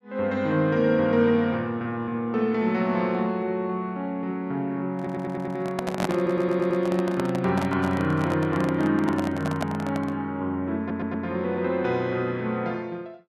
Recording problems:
handling noise; from 5 to 10 s; peak +3 dB vs average level
stutter; at 5 s, at 6 s and at 11 s

